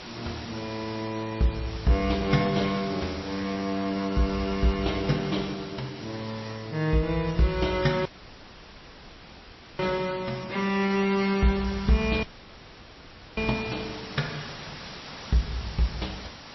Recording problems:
lossy compression; MP3, then MP3, log-spectral distance 10 dB, nothing above 5.7 kHz
background hiss; slope -2 dB per octave, SNR 13 dB
audio cutting out; at 8 s for 1.5 s and at 12 s for 1 s

